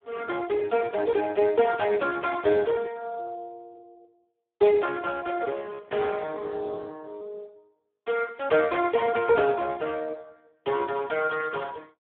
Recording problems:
telephone audio; 320 Hz to 2.5 kHz, Speex

